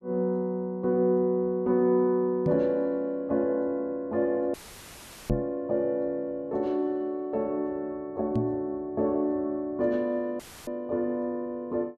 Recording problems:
microphone bump; at 2.5 s, at 5.5 s and at 8.5 s; peak +4 dB vs average level
dropout; at 4.5 s for 1 s and at 10 s; filled with static

